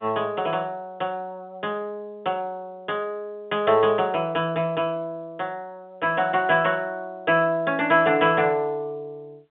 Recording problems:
telephone audio; 170 Hz to 3.6 kHz, G.711

